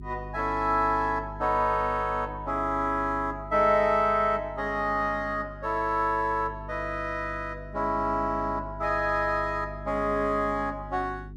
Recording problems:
electrical hum; 50 Hz, harmonics up to 400 Hz, SNR 15 dB

